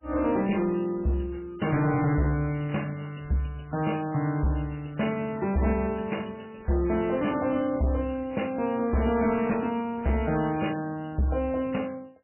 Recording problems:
lossy compression; MP3, log-spectral distance 6 dB, nothing above 2.9 kHz
distorted audio; hard clipping, signal-to-distortion ratio 11 dB

